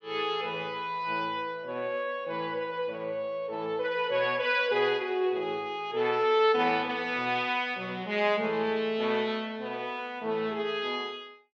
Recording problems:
none

